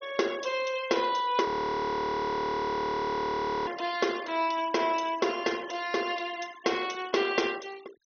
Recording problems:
treble missing; nothing above 6.3 kHz
denoising artefacts; signal-to-artefact ratio 19 dB
frozen audio; at 1.5 s for 2 s

